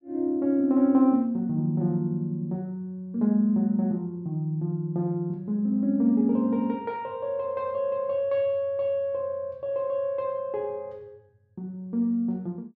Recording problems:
none

